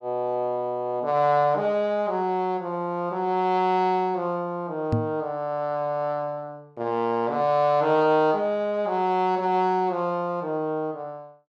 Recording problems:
microphone bump; at 5 s; peak +3 dB vs average level

